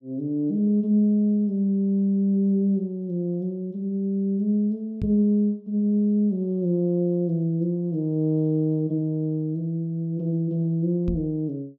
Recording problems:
microphone thump; at 5 s and at 11 s; peak -2 dB vs average level

